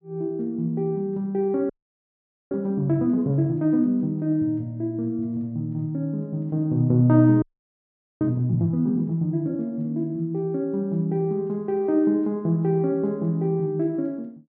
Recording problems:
audio freezing; at 1.5 s for 1 s and at 7.5 s for 1 s

